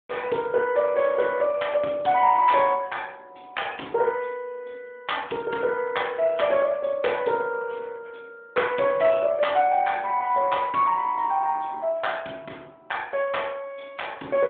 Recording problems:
phone line; 240 Hz to 3.6 kHz, AMR-NB

